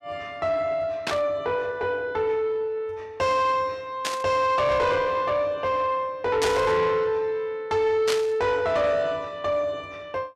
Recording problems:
distortion; soft clipping, signal-to-distortion ratio 11 dB
burst of static; 4 times, first at 1 s; peak +1 dB vs average level

